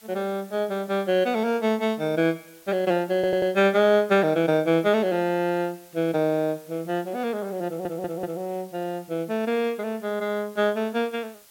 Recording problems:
background hiss; slope +1 dB per octave, SNR 26 dB
audio stuttering; at 3 s and at 7.5 s

